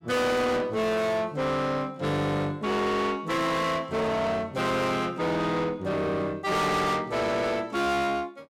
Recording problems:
distorted audio; soft clipping, signal-to-distortion ratio 7 dB

